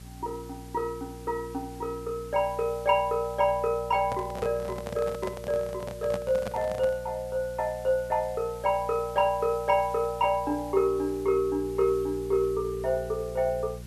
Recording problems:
hum; 60 Hz, harmonics up to 600 Hz, SNR 16 dB
hiss; SNR 23 dB
handling noise; from 4 to 7 s; peak -3 dB vs average level

